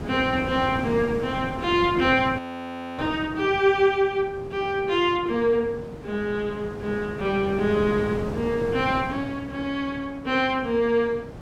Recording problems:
wind noise; below 530 Hz, SNR 11 dB
audio freezing; at 2.5 s for 0.5 s

